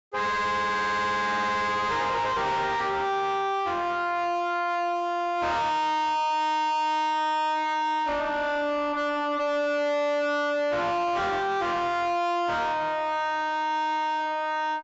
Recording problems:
treble cut off; nothing above 8 kHz
distortion; soft clipping, signal-to-distortion ratio 5 dB

